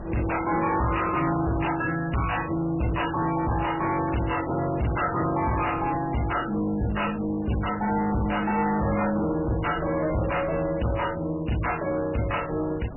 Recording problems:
lossy codec; MP3, log-spectral distance 6 dB, nothing above 2.9 kHz
distortion; hard clipping, uneven, signal-to-distortion ratio 5 dB
wind noise; below 590 Hz, SNR 17 dB

